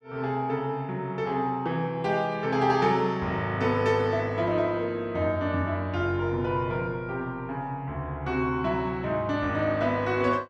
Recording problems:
none

